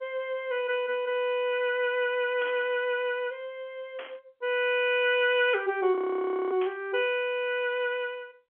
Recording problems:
phone line; 220 Hz to 3.4 kHz, G.711
burst of static; at 2.5 s, at 4 s and at 6.5 s; peak -10 dB vs average level
audio freezing; at 6 s for 0.5 s

